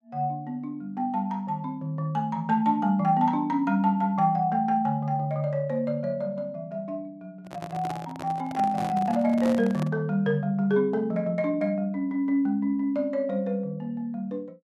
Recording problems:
microphone handling noise; from 7.5 to 10 s; peak -4 dB vs average level

